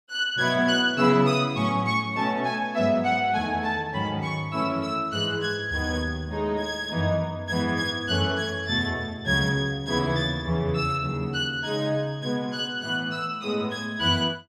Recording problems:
none

